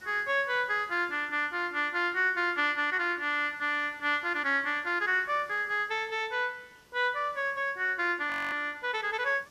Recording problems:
background hiss; slope -3 dB per octave, SNR 30 dB
audio freezing; at 8.5 s

